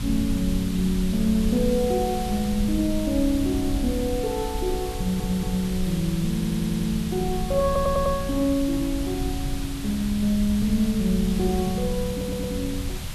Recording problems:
hiss; slope 0 dB per octave, SNR 12 dB
rumble; below 96 Hz, SNR 8 dB
audio stuttering; 4 times, first at 5 s

